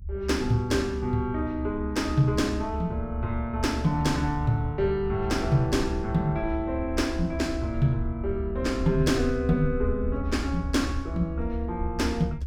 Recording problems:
low-frequency rumble; below 74 Hz, SNR 7 dB

